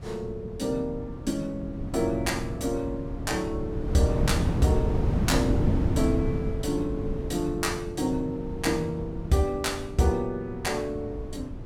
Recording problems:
wind noise; below 210 Hz, SNR 3 dB

